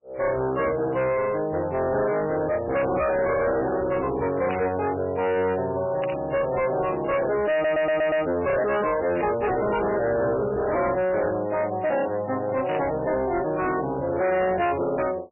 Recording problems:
lossy codec; MP3, log-spectral distance 4 dB, nothing above 2.6 kHz
distortion; hard clipping, uneven, signal-to-distortion ratio 7 dB
burst of static; 4 times, first at 4.5 s; peak -7 dB vs average level
audio stuttering; at 7.5 s

